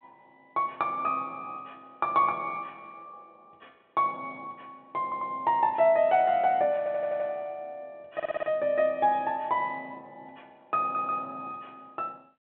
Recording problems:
phone line; 170 Hz to 3.6 kHz, G.726
stutter; 4 times, first at 5 s

